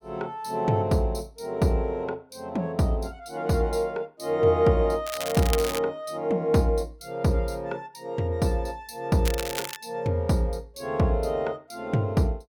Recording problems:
crackle; at 5 s and at 9 s; loose cable, SNR 8 dB

